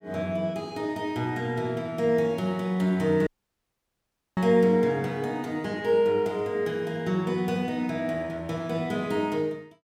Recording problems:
dropout; at 3.5 s for 1 s

